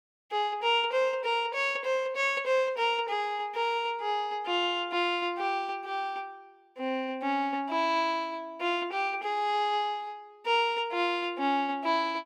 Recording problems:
none

